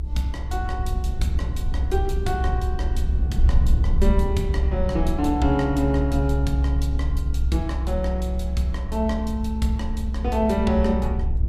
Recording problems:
low-frequency rumble; below 66 Hz, strongest tone 64 Hz, SNR -1 dB

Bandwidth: 15.5 kHz